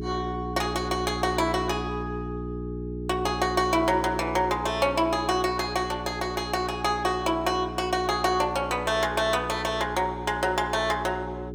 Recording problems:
hum; 60 Hz, harmonics up to 420 Hz, SNR 9 dB

